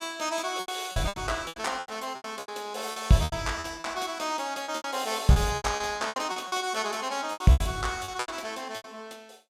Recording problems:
lost packets; 16% of the sound replaced, filled with repeated pitch periods

